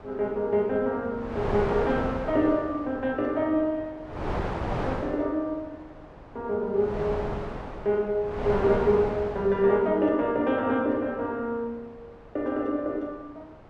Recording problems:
wind on the microphone; below 880 Hz, SNR 7 dB

